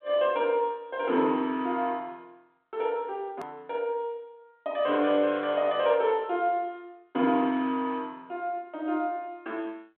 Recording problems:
phone line; 190 Hz to 3.5 kHz, G.726
hard cut with a click; at 3.5 s

